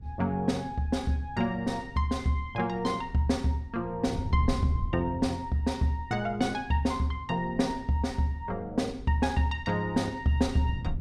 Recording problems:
wind noise; below 130 Hz, SNR 13 dB

